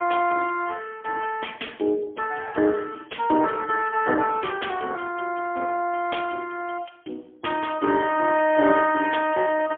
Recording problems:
telephone audio; 260 Hz to 2.6 kHz, AMR-NB, then MP3

